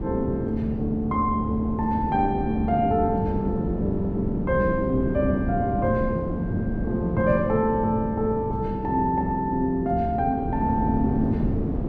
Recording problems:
wind noise; below 300 Hz, SNR 5 dB

